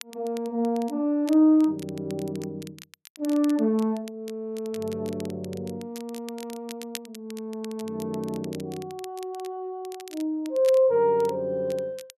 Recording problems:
crackling; vinyl, SNR 20 dB

